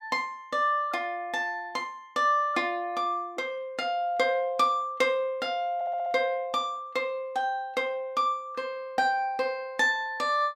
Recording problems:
audio stuttering; at 6 s

